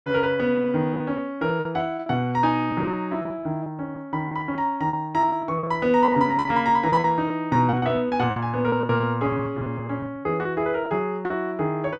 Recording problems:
packet loss; 13% of the sound replaced, filled with repeated pitch periods

